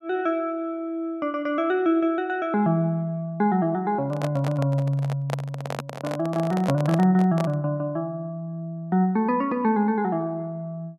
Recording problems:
handling noise; from 4 to 7.5 s; peak +1 dB vs average level

